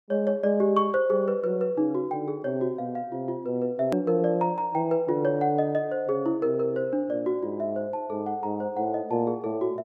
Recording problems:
hard cut with a click; at 4 s

